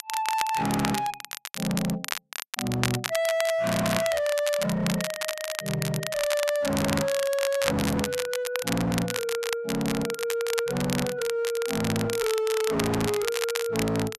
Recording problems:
distorted audio; hard clipping, uneven, signal-to-distortion ratio 6 dB
crackle; vinyl, SNR 5 dB

